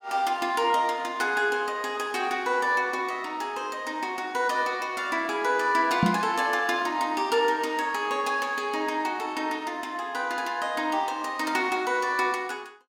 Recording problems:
microphone bump; at 6 s; peak +6 dB vs average level

